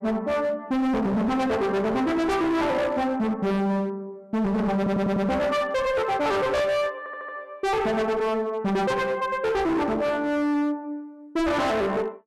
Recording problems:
distorted audio; hard clipping, signal-to-distortion ratio 6 dB
stutter; at 5 s and at 7 s

